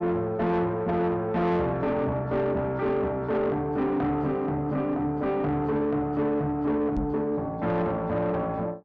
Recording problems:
distorted audio; soft clipping, signal-to-distortion ratio 10 dB
microphone thump; at 7 s; peak -1 dB vs average level

